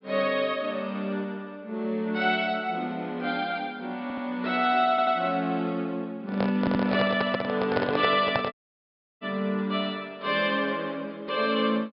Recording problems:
treble cut off; nothing above 5.5 kHz
audio stuttering; at 4 s, at 5 s and at 6.5 s
handling noise; from 6.5 to 9 s; peak +4 dB vs average level
audio cutting out; at 8.5 s for 0.5 s

